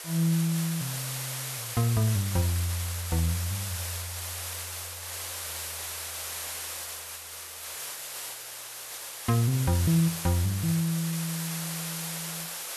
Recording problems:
background hiss; SNR 5 dB

